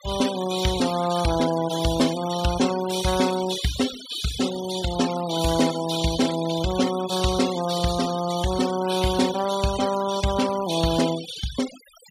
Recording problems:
denoising artefacts; signal-to-artefact ratio 11 dB

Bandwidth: 15.5 kHz